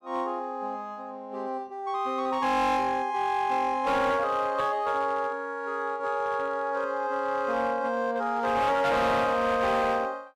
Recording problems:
distortion; hard clipping, signal-to-distortion ratio 11 dB

